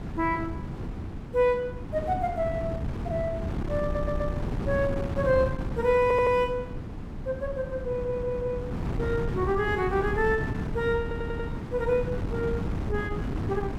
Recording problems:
wind noise; below 260 Hz, SNR 5 dB
stutter; 4 times, first at 4 s

